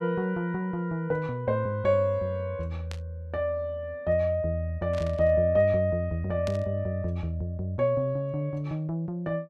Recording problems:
burst of static; at 3 s, at 5 s and at 6.5 s; peak -8 dB vs average level

